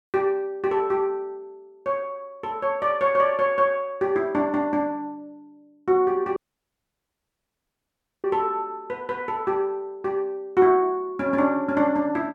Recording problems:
audio cutting out; at 6.5 s for 2 s

